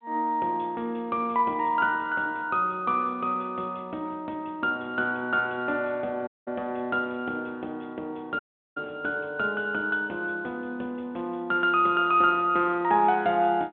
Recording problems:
telephone audio; 220 Hz to 3.6 kHz, G.726
audio cutting out; at 6.5 s and at 8.5 s

